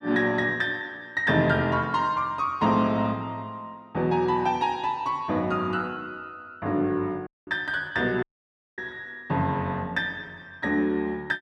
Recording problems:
audio cutting out; at 7.5 s and at 8 s for 0.5 s

